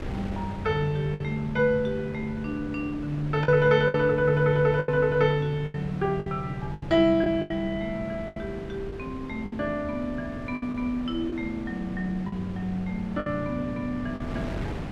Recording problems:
wind on the microphone; below 410 Hz, SNR 12 dB
packet loss; 7% of the sound replaced, filled with the last packet

